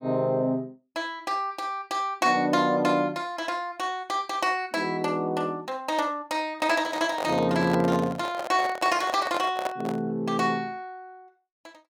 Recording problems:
microphone handling noise; from 6.5 to 10 s; peak 0 dB vs average level

